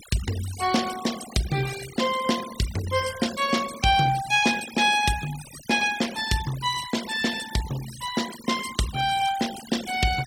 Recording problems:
noise reduction artefacts; signal-to-artefact ratio 13 dB

